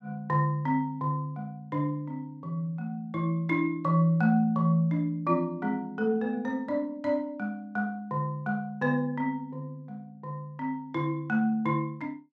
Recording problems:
none

